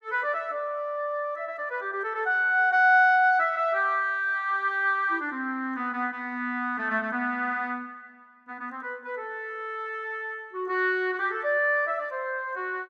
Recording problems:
none

